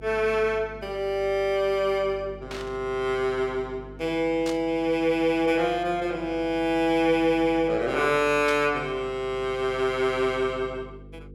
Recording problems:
hum; 50 Hz, harmonics up to 500 Hz, SNR 20 dB
burst of static; at 2.5 s, at 4.5 s and at 8.5 s; peak -6 dB vs average level

